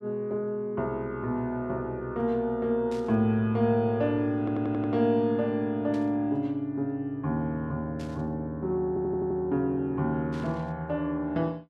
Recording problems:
burst of static; 4 times, first at 3 s; peak -15 dB vs average level
audio stuttering; at 4.5 s and at 9 s

